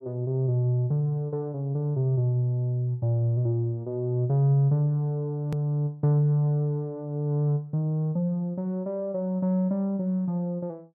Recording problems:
click at an edit; at 5.5 s

